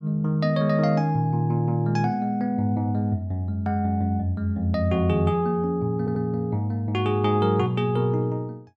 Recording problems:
audio stuttering; at 6 s

